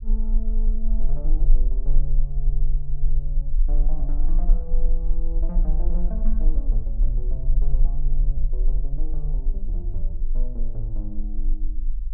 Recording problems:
low-frequency rumble; below 32 Hz, strongest tone 20 Hz, SNR -11 dB

